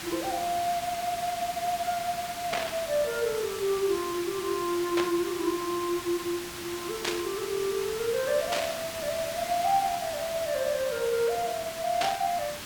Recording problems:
background hiss; SNR 7 dB
burst of static; 5 times, first at 2.5 s; peak +4 dB vs average level

